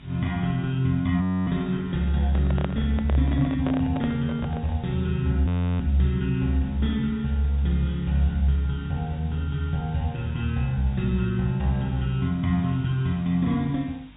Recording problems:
treble cut off; nothing above 4 kHz
electrical hum; 50 Hz, harmonics up to 300 Hz, SNR 26 dB
hiss; SNR 28 dB
audio freezing; at 1 s and at 5.5 s
microphone handling noise; from 2.5 to 5 s; peak -2 dB vs average level

